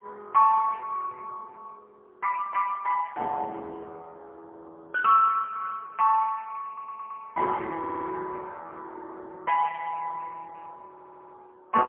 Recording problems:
phone line; 260 Hz to 2.2 kHz, AMR-NB, then MP3
stutter; at 6.5 s, at 8 s and at 11 s

